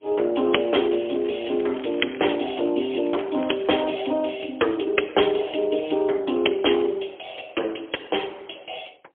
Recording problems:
telephone audio; 280 Hz to 3.4 kHz, AMR-NB, then MP3
crackling; from 1 to 2.5 s and at 3 s; loose cable, SNR 21 dB

